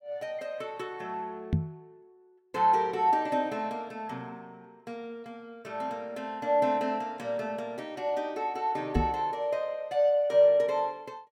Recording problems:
microphone bump; at 1.5 s and at 9 s; peak +6 dB vs average level

